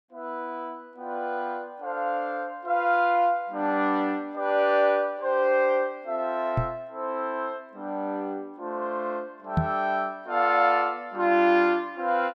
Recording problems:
microphone thump; at 6.5 s and at 9.5 s; peak +5 dB vs average level

